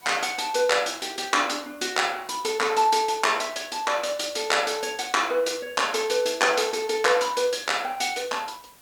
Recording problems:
background hiss; slope -2 dB per octave, SNR 26 dB

